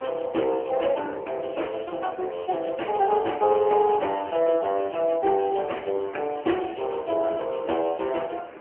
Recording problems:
telephone audio; 260 Hz to 3.2 kHz, AMR-NB
wind noise; below 1.4 kHz, SNR 20 dB

